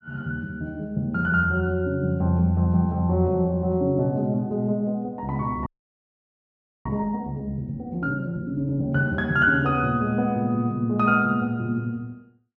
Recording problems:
audio freezing; at 5.5 s for 1 s

